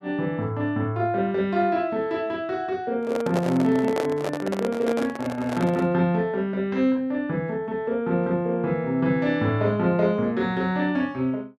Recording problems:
handling noise; from 3 to 6 s; peak 0 dB vs average level

